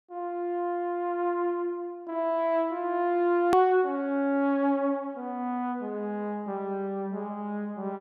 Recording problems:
edit click; at 3.5 s

